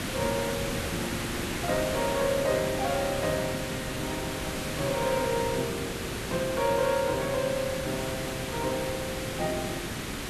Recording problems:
hiss; slope -3 dB per octave, SNR 2 dB

